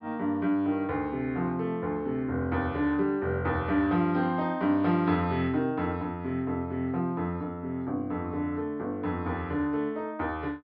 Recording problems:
treble cut off; nothing above 5.5 kHz

